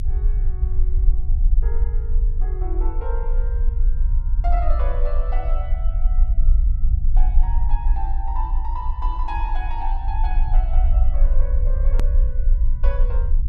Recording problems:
rumble; below 50 Hz, strongest tone 24 Hz, SNR -12 dB
click at an edit; at 12 s

